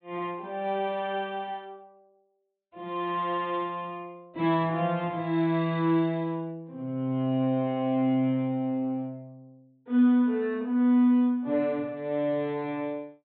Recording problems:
treble cut off; nothing above 4 kHz

